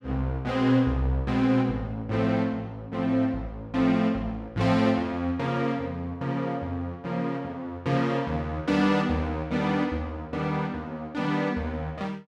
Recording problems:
none

